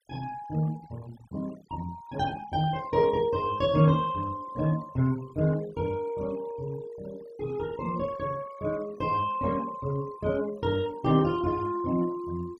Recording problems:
noise reduction artefacts; signal-to-artefact ratio 21 dB

